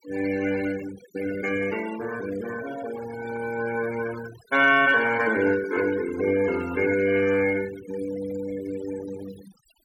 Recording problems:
noise reduction artefacts; signal-to-artefact ratio 14 dB

